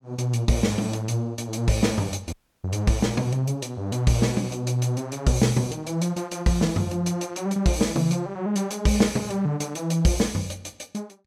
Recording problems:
dropout; at 2.5 s

